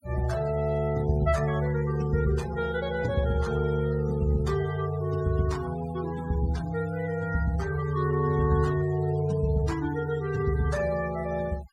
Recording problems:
denoising artefacts; signal-to-artefact ratio 18 dB

